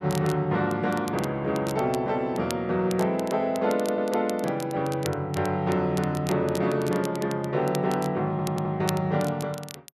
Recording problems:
crackling; vinyl, SNR 16 dB
stutter; at 4 s and at 8.5 s

